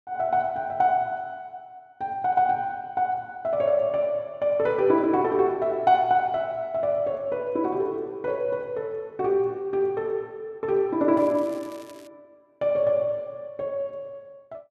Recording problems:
crackling; at 11 s; loose cable, SNR 27 dB

